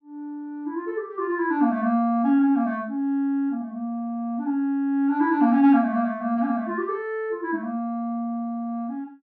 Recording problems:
low-pass filter; nothing above 5.8 kHz

